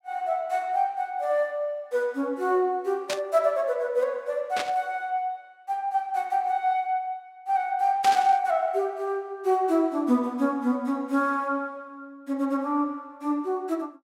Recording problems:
burst of static; at 3 s, at 4.5 s and at 8 s; peak 0 dB vs average level

